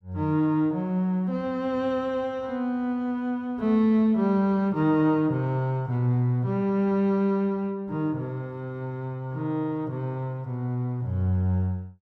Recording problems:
none

